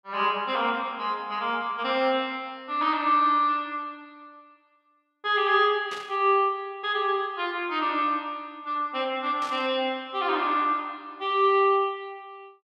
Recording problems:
static burst; at 6 s and at 9.5 s; peak -10 dB vs average level

